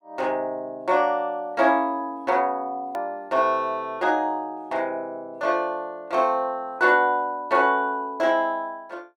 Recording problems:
hard cut with a click; at 3 s

